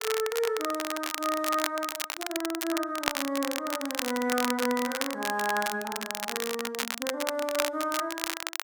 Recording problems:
crackle; vinyl, SNR 2 dB

